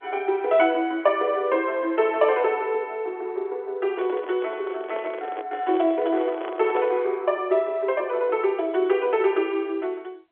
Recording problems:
phone line; 280 Hz to 3.6 kHz, G.711
handling noise; from 4 to 7 s; peak -6 dB vs average level

